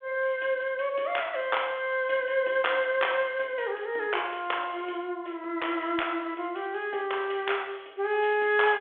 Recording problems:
telephone audio; 280 Hz to 3.5 kHz, G.726

